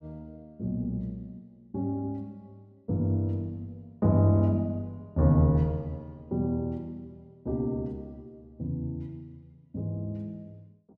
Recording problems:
none

